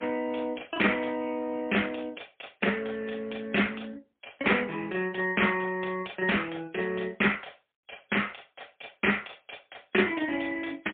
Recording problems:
phone line; 260 Hz to 3.4 kHz, AMR-NB, then MP3

